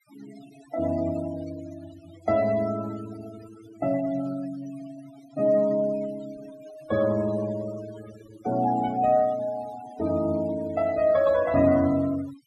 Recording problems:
noise reduction artefacts; signal-to-artefact ratio 18 dB

